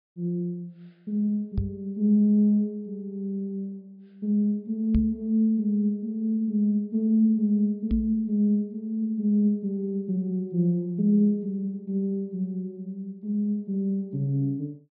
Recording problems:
treble cut off; nothing above 5.5 kHz
microphone bump; at 1.5 s, at 5 s and at 8 s; peak +3 dB vs average level

